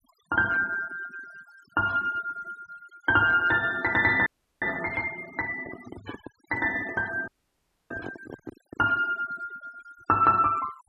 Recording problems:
noise reduction artefacts; signal-to-artefact ratio 21 dB
audio freezing; at 4.5 s and at 7.5 s for 0.5 s
handling noise; from 5.5 to 9 s; peak -9 dB vs average level

